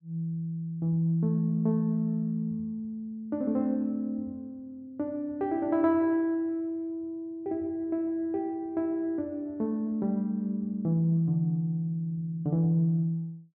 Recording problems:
none

